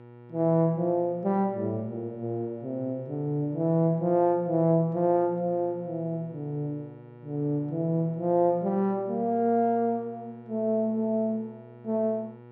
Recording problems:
hum; 60 Hz, harmonics up to 1.4 kHz, SNR 21 dB

